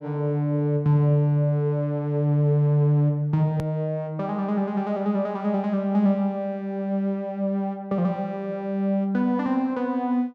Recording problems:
hard cut with a click; at 3.5 s

